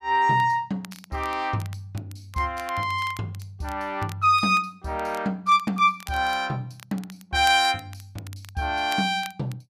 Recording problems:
crackling; vinyl, SNR 22 dB

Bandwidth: 14.5 kHz